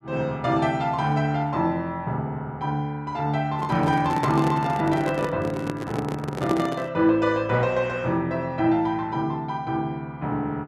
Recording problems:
handling noise; from 3.5 to 7 s; peak +2 dB vs average level

